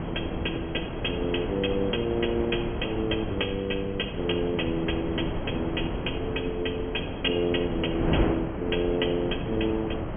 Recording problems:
treble missing; nothing above 3.3 kHz
wind noise; below 530 Hz, SNR 4 dB

